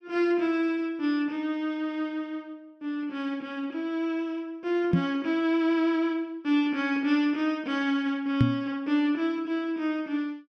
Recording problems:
microphone thump; at 5 s and at 8.5 s; peak +9 dB vs average level

